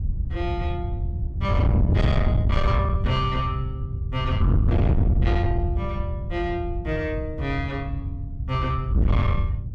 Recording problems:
distorted audio; soft clipping, signal-to-distortion ratio 6 dB
wind on the microphone; below 120 Hz, SNR -3 dB

